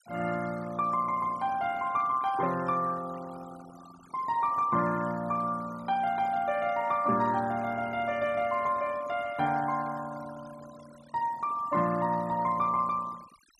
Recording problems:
denoising artefacts; signal-to-artefact ratio 20 dB

